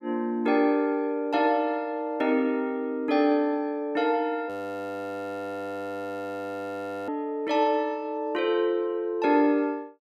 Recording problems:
frozen audio; at 4.5 s for 2.5 s

